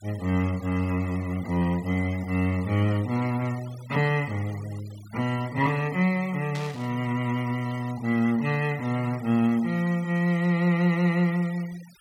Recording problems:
noise reduction artefacts; signal-to-artefact ratio 21 dB
burst of static; at 6.5 s; peak -9 dB vs average level

